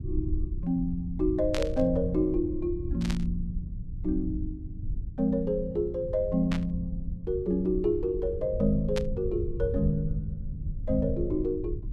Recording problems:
low-frequency rumble; below 90 Hz, SNR 7 dB
burst of static; 4 times, first at 1.5 s; peak -2 dB vs average level

